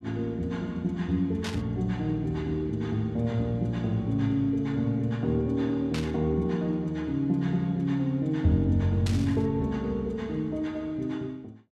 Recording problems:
burst of static; at 1.5 s, at 6 s and at 9 s; peak -4 dB vs average level

